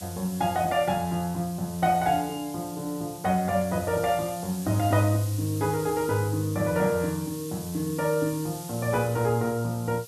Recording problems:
hiss; SNR 14 dB

